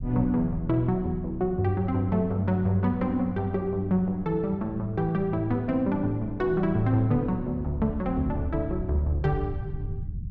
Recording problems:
low-frequency rumble; below 120 Hz, SNR 12 dB

